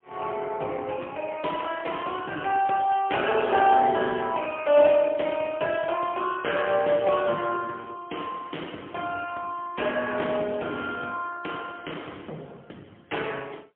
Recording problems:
telephone audio; 260 Hz to 3.3 kHz, AMR-NB, then MP3

